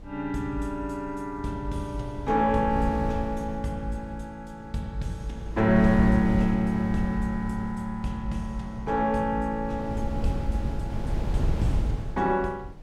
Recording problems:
wind on the microphone; below 120 Hz, SNR 6 dB

